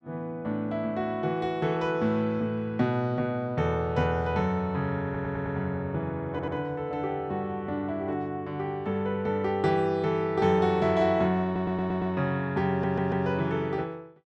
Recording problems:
audio stuttering; 4 times, first at 5 s

